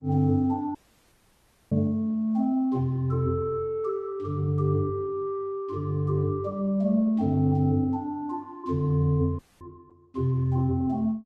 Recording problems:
lossy codec; Opus, log-spectral distance 2 dB, nothing above 11.6 kHz
audio cutting out; at 1 s for 1 s and at 9.5 s

